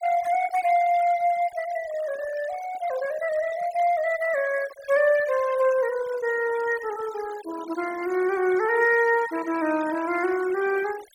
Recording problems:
denoising artefacts; signal-to-artefact ratio 17 dB

